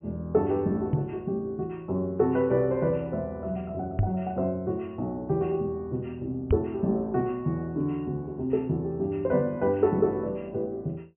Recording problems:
treble missing; nothing above 3.1 kHz
microphone thump; at 1 s, at 4 s and at 6.5 s; peak +7 dB vs average level

